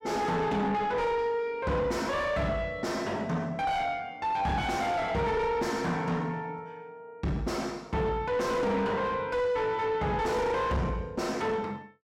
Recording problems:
distorted audio; soft clipping, signal-to-distortion ratio 7 dB

